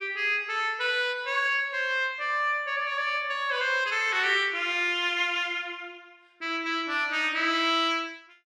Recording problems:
none

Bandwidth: 14.5 kHz